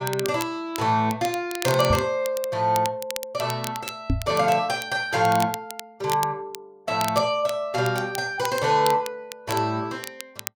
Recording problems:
crackling; vinyl, SNR 12 dB
microphone bump; at 2 s and at 4 s; peak +4 dB vs average level

